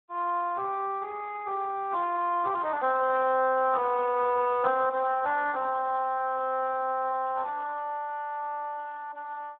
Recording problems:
telephone audio; 320 Hz to 3.6 kHz, Speex

